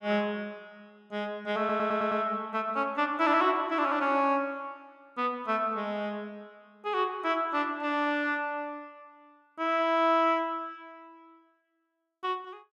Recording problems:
audio stuttering; at 1.5 s

